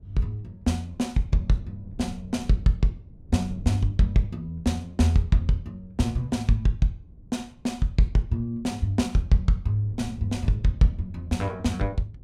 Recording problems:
wind on the microphone; below 140 Hz, SNR 20 dB

